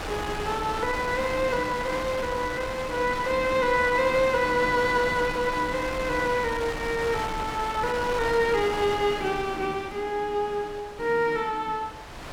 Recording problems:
wind noise; below 2.2 kHz, SNR 9 dB

